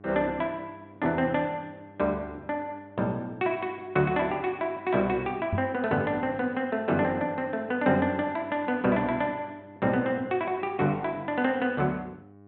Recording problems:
treble missing; nothing above 4 kHz
hum; 50 Hz, harmonics up to 1.5 kHz, SNR 24 dB
microphone thump; at 5.5 s; peak +2 dB vs average level

